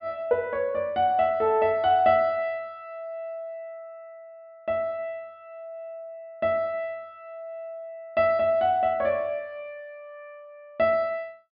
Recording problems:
treble cut off; nothing above 5.5 kHz

